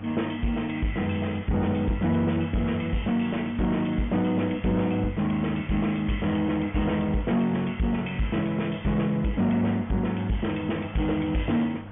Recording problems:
treble cut off; nothing above 3.4 kHz
lossy codec; MP3, log-spectral distance 3 dB
distortion; soft clipping, signal-to-distortion ratio 11 dB
electrical hum; 50 Hz, harmonics up to 800 Hz, SNR 16 dB
hiss; SNR 22 dB

